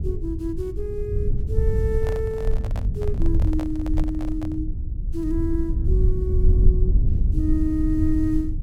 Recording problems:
rumble; below 80 Hz, SNR -4 dB
handling noise; from 2 to 4.5 s; peak -4 dB vs average level

